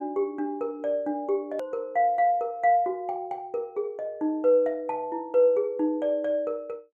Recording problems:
edit click; at 1.5 s

